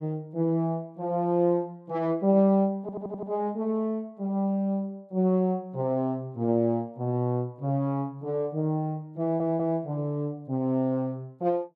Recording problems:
stutter; at 3 s and at 9 s

